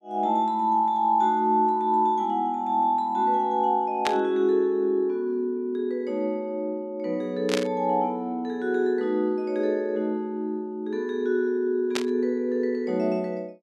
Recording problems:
static burst; at 4 s, at 7.5 s and at 12 s; peak +2 dB vs average level

